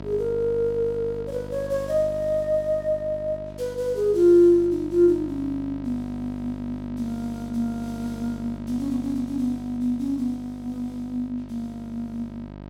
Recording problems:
electrical hum; 50 Hz, harmonics up to 2 kHz, SNR 14 dB

